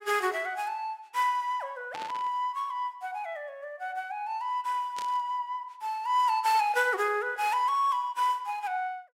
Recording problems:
static burst; at 2 s and at 5 s; peak -7 dB vs average level

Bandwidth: 16 kHz